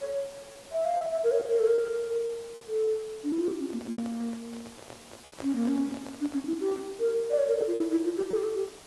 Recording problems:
lossy compression; AAC, log-spectral distance 5 dB, nothing above 11.3 kHz
hiss; SNR 19 dB
lost packets; 7% of the sound replaced, filled with repeated pitch periods
microphone handling noise; from 3.5 to 7 s; peak -7 dB vs average level

